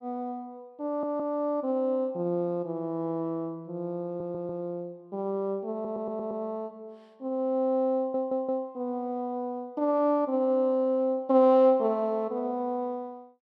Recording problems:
stutter; 4 times, first at 1 s

